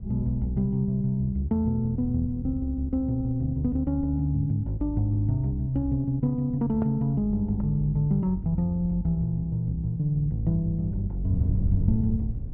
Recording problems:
wind on the microphone; below 120 Hz, SNR 11 dB

